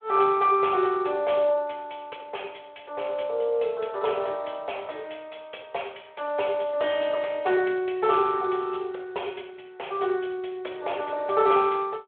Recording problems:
phone line; 320 Hz to 3.5 kHz, Speex

